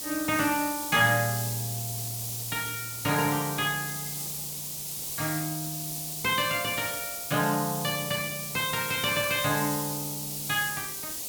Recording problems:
hiss; SNR 4 dB

